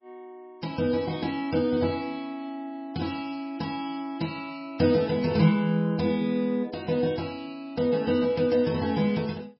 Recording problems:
codec artefacts; MP3, log-spectral distance 3 dB, nothing above 5.3 kHz

